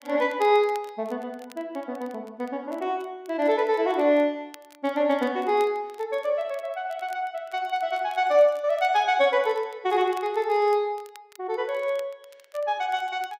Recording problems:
crackle; vinyl, SNR 28 dB

